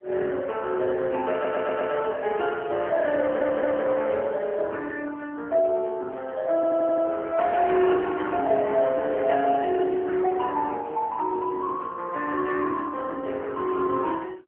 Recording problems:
telephone audio; 240 Hz to 3.3 kHz, AMR-NB
stutter; at 1.5 s, at 3 s and at 6.5 s

